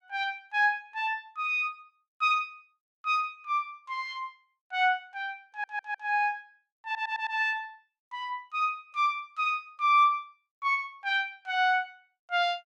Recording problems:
stutter; at 5.5 s and at 7 s

